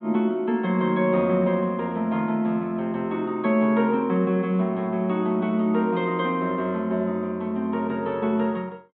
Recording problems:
low-pass filter; nothing above 4 kHz

